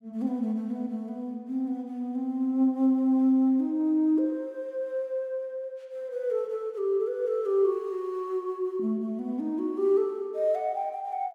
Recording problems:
none

